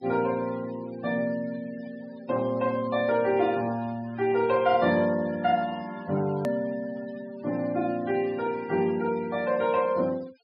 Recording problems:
treble missing; nothing above 5.5 kHz
noise reduction artefacts; signal-to-artefact ratio 21 dB
hard cut with a click; at 6.5 s

